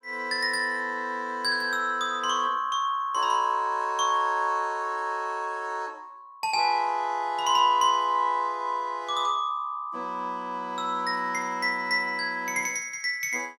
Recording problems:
none

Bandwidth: 17.5 kHz